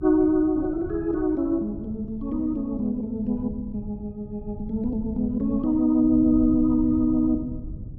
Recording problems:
rumble; below 150 Hz, SNR 14 dB

